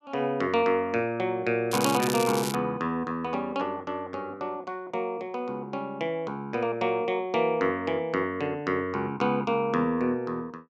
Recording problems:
crackle; at 1.5 s; loose cable, SNR 6 dB

